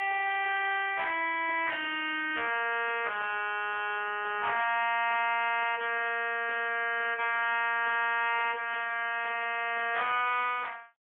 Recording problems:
telephone audio; 320 Hz to 3.3 kHz, AMR-NB, then MP3

